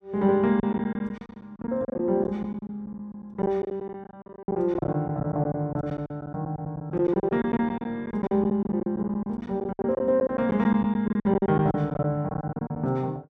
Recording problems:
lost packets; 17% of the sound replaced, filled with silence

